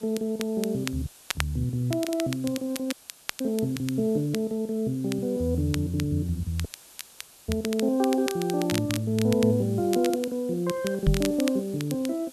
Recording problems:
hiss; SNR 22 dB
crackle; vinyl, SNR 11 dB
audio cutting out; at 1 s, at 3 s and at 6.5 s for 1 s
knock on the microphone; at 11 s; peak +8 dB vs average level

